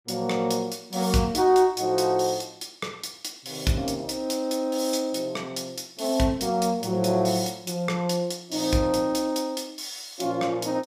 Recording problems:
none

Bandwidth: 15.5 kHz